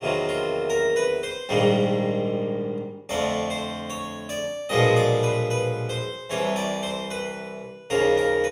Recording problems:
none

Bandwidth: 15.5 kHz